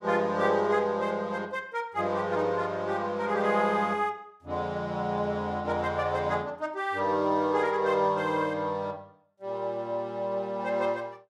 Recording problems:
none

